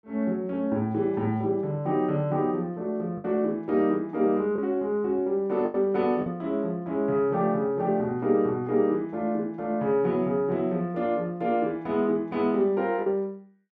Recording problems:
lost packets; 1.8% of the sound replaced, filled with the last packet

